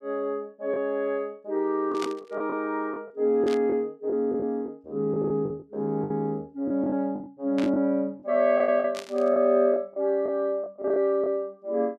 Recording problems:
lost packets; 8% of the sound replaced, filled with the last packet
static burst; 4 times, first at 2 s; peak -7 dB vs average level

